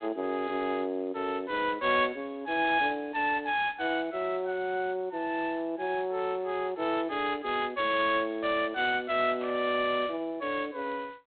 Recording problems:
telephone audio; 220 Hz to 3.5 kHz, G.726
burst of static; at 9.5 s; peak -12 dB vs average level

